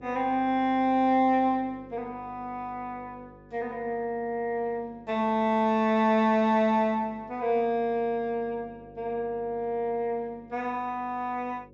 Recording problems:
treble cut off; nothing above 7.6 kHz
electrical hum; 50 Hz, harmonics up to 550 Hz, SNR 24 dB

